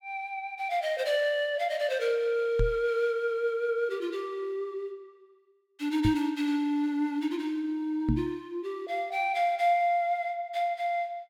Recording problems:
microphone bump; at 2.5 s, at 6 s and at 8 s; peak +5 dB vs average level

